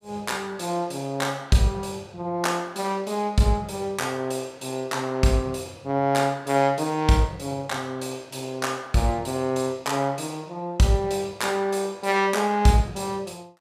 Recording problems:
none

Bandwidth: 15 kHz